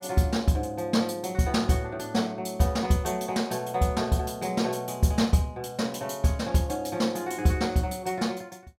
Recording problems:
none

